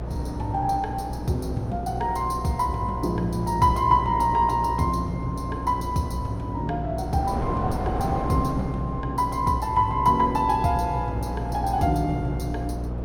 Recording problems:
hum; 60 Hz, harmonics up to 660 Hz, SNR 8 dB
wind noise; below 610 Hz, SNR 10 dB

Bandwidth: 17.5 kHz